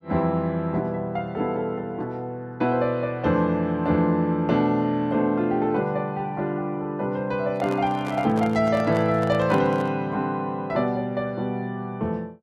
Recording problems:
handling noise; from 7.5 to 10 s; peak -6 dB vs average level

